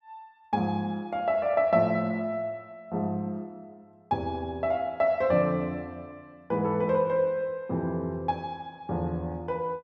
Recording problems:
none

